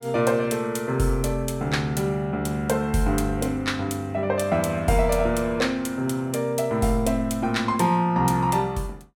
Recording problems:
none

